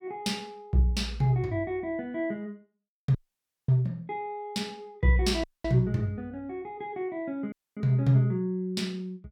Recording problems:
audio cutting out; at 3 s for 0.5 s, at 5.5 s and at 7.5 s

